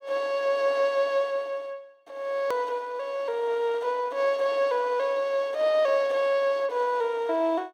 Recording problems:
hard cut with a click; at 2.5 s

